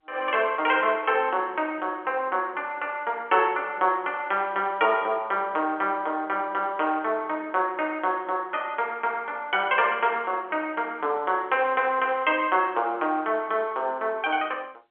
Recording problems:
telephone audio; 320 Hz to 3.3 kHz, G.711

